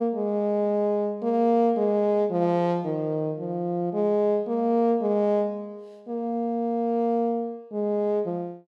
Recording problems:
none

